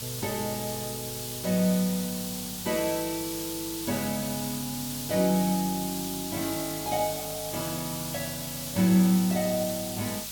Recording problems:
hum; 50 Hz, harmonics up to 550 Hz, SNR 21 dB
background hiss; SNR 5 dB

